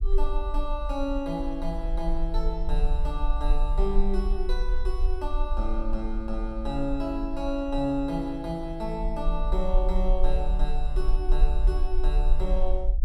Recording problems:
low-frequency rumble; below 40 Hz, strongest tone 18 Hz, SNR -2 dB

